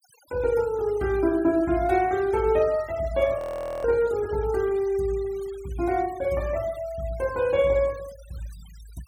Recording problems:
noise reduction artefacts; signal-to-artefact ratio 22 dB
audio freezing; at 3.5 s

